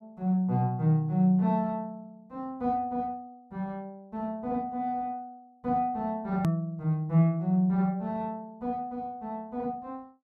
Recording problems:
hard cut with a click; at 6.5 s

